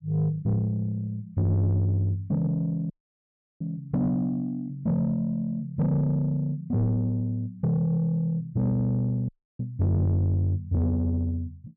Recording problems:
distortion; soft clipping, signal-to-distortion ratio 11 dB
audio cutting out; at 3 s for 0.5 s and at 9.5 s

